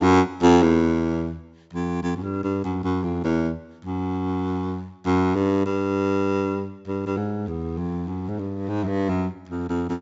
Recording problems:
low-pass filter; nothing above 7.6 kHz

